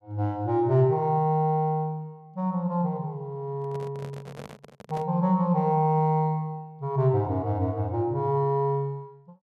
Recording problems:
microphone handling noise; from 3.5 to 5 s; peak -11 dB vs average level

